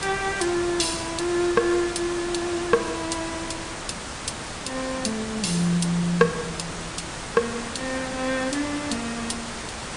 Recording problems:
codec artefacts; MP3, log-spectral distance 11 dB
background hiss; slope -3 dB per octave, SNR 7 dB
wind noise; below 410 Hz, SNR 16 dB

